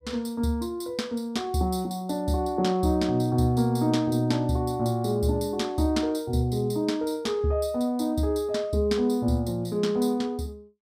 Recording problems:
none

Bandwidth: 15.5 kHz